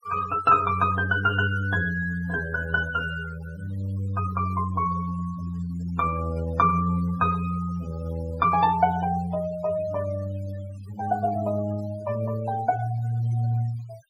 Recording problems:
denoising artefacts; signal-to-artefact ratio 17 dB

